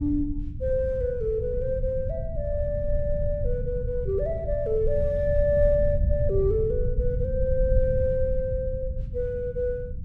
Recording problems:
rumble; below 92 Hz, SNR 4 dB

